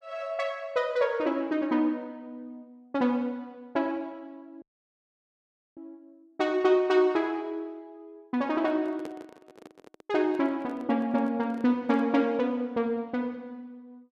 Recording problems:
audio cutting out; at 4.5 s for 1 s
handling noise; from 8.5 to 12 s; peak -8 dB vs average level

